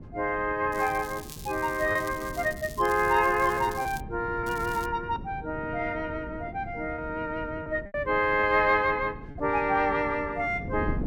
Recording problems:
wind on the microphone; below 270 Hz, SNR 14 dB
packet loss; 3% of the sound replaced, filled with repeated pitch periods
crackle; from 0.5 to 4 s and at 4.5 s; loose cable, SNR 18 dB

